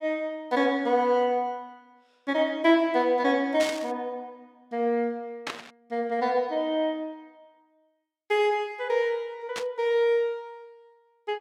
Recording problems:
static burst; at 3.5 s, at 5.5 s and at 9.5 s; peak -3 dB vs average level

